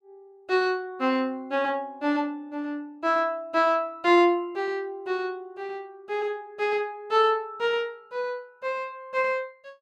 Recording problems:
none

